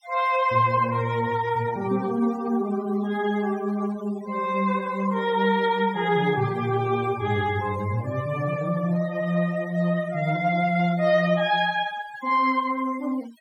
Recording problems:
denoising artefacts; signal-to-artefact ratio 18 dB

